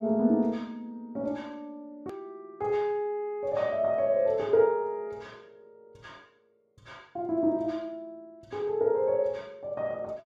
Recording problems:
click at an edit; at 2 s

